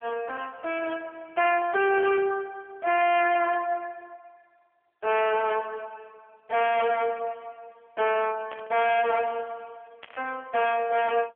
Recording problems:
telephone audio; 370 Hz to 3.5 kHz, AMR-NB
distorted audio; hard clipping, signal-to-distortion ratio 11 dB
burst of static; 4 times, first at 1.5 s; peak -10 dB vs average level

